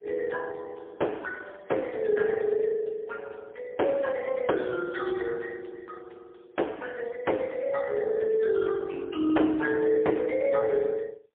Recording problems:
phone line; 260 Hz to 2.9 kHz, AMR-NB, then MP3

